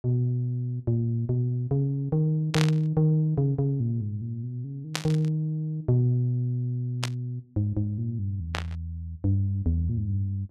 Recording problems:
static burst; 4 times, first at 2.5 s; peak +3 dB vs average level

